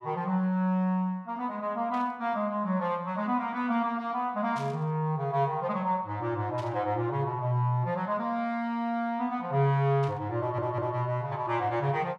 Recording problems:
burst of static; 4 times, first at 2 s; peak -12 dB vs average level
audio stuttering; at 10 s

